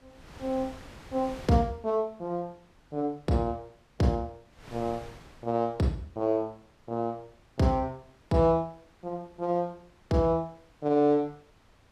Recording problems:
wind noise; below 1.6 kHz, SNR 23 dB

